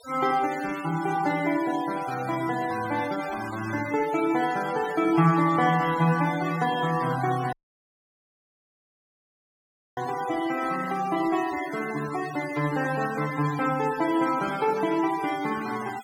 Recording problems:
noise reduction artefacts; signal-to-artefact ratio 15 dB
audio cutting out; at 7.5 s for 2.5 s

